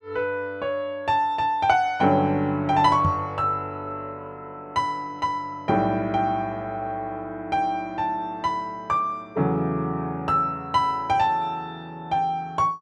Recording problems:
knock on the microphone; at 3 s; peak +3 dB vs average level

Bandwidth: 12 kHz